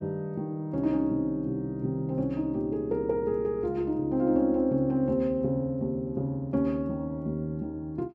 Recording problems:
none

